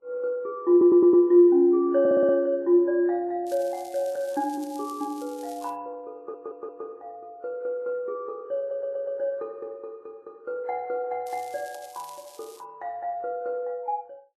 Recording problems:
codec artefacts; Vorbis, log-spectral distance 2 dB
stutter; 4 times, first at 0.5 s
crackling; from 3.5 to 5.5 s and from 11 to 13 s; loose cable, SNR 24 dB

